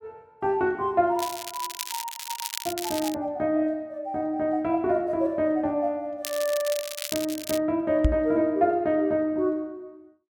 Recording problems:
crackle; from 1 to 3 s and from 6.5 to 7.5 s; loose cable, SNR 8 dB
microphone bump; at 8 s; peak +7 dB vs average level

